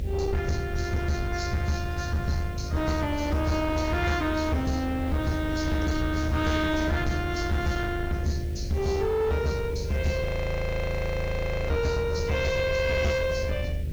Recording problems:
lossy compression; AAC, log-spectral distance 3 dB
distorted audio; soft clipping, signal-to-distortion ratio 11 dB
electrical hum; 50 Hz, harmonics up to 600 Hz, SNR 13 dB
background hiss; SNR 24 dB
low-frequency rumble; below 110 Hz, SNR 5 dB
frozen audio; at 10 s for 1.5 s

